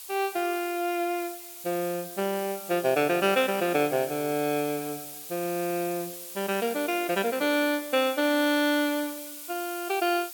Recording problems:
hiss; SNR 11 dB

